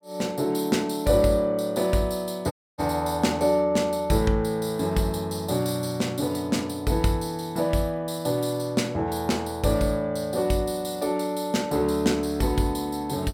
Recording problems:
audio cutting out; at 2.5 s

